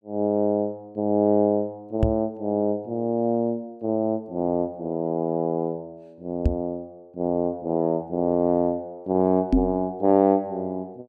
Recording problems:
microphone bump; at 2 s, at 6.5 s and at 9.5 s; peak +8 dB vs average level

